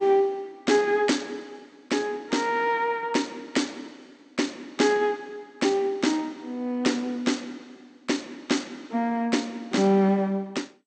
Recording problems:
lossy compression; MP2, log-spectral distance 2 dB, nothing above 8.5 kHz

